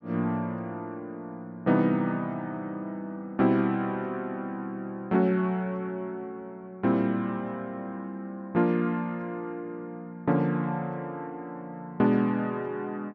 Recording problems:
treble missing; nothing above 8 kHz

